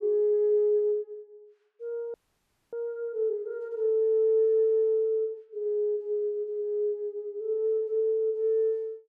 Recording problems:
audio freezing; at 2 s for 0.5 s

